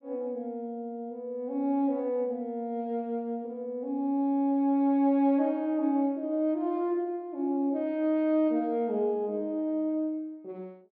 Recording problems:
none

